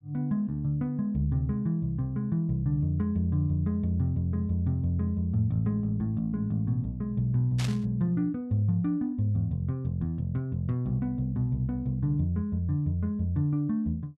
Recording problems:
burst of static; at 7.5 s; peak -4 dB vs average level

